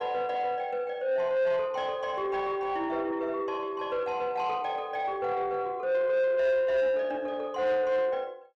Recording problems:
distortion; soft clipping, signal-to-distortion ratio 12 dB

